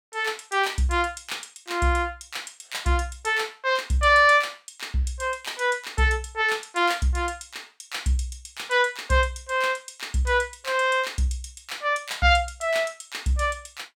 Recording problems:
none

